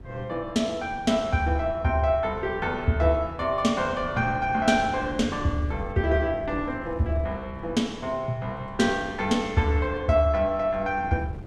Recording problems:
wind on the microphone; below 230 Hz, SNR 16 dB

